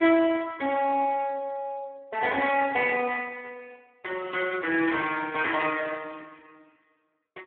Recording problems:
phone line; 260 Hz to 3.4 kHz, Speex

